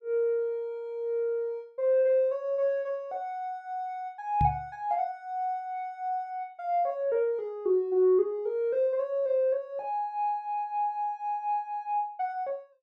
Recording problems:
microphone bump; at 4.5 s; peak +3 dB vs average level

